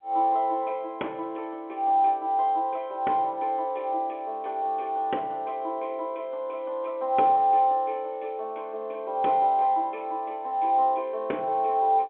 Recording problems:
phone line; 260 Hz to 4 kHz, G.711

